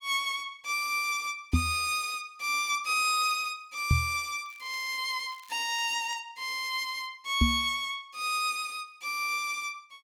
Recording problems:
microphone thump; at 1.5 s, at 4 s and at 7.5 s; peak +8 dB vs average level
crackle; from 4.5 to 6 s; loose cable, SNR 26 dB

